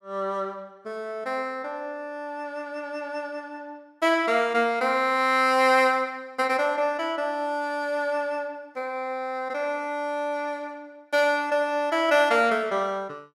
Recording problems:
none

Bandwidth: 16 kHz